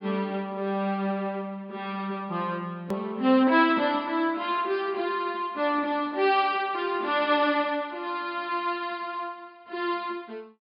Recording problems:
treble cut off; nothing above 5.2 kHz
edit click; at 3 s

